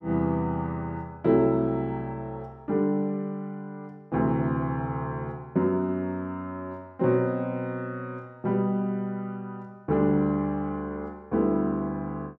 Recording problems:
none

